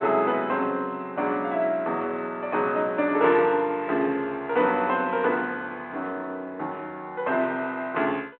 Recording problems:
phone line; 220 Hz to 3.5 kHz, G.726

